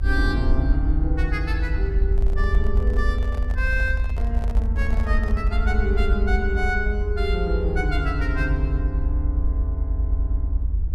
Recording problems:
rumble; below 68 Hz, SNR -4 dB
handling noise; from 2 to 5.5 s; peak -7 dB vs average level

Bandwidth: 14.5 kHz